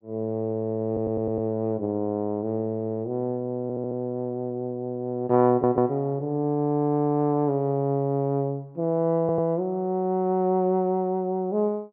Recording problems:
audio stuttering; 4 times, first at 1 s

